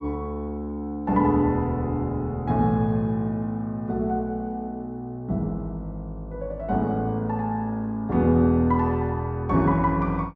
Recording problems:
none

